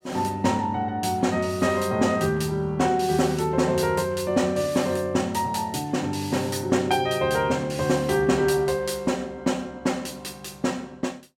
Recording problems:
none

